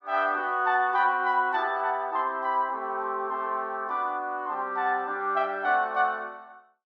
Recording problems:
none

